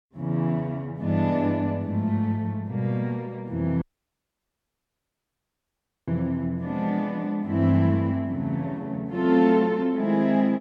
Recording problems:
audio cutting out; at 4 s for 2.5 s

